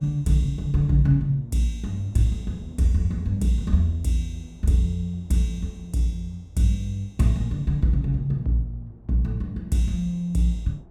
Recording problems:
wind on the microphone; below 290 Hz, SNR 27 dB

